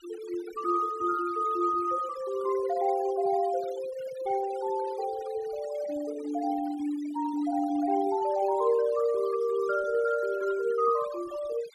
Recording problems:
noise reduction artefacts; signal-to-artefact ratio 18 dB

